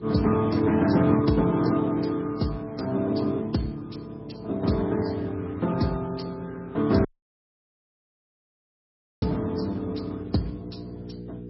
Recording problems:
lossy codec; Speex, then MP3, log-spectral distance 4 dB, nothing above 5.5 kHz
hum; 60 Hz, harmonics up to 480 Hz, SNR 16 dB
audio cutting out; at 7 s for 2 s

